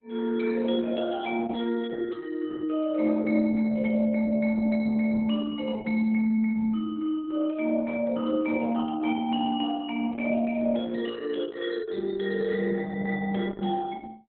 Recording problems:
lossy compression; Opus, log-spectral distance 3 dB, nothing above 3.4 kHz

